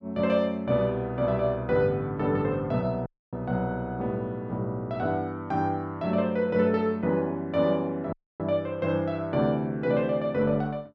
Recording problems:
dropout; at 3 s and at 8 s

